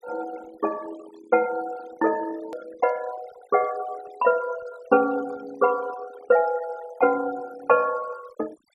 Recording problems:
denoising artefacts; signal-to-artefact ratio 19 dB
hard cut with a click; at 2.5 s

